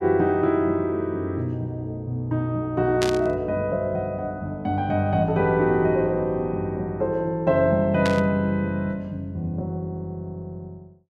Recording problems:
burst of static; at 3 s and at 8 s; peak 0 dB vs average level

